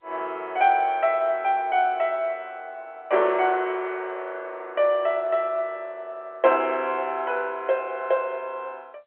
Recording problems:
telephone audio; 300 Hz to 3.3 kHz, G.711

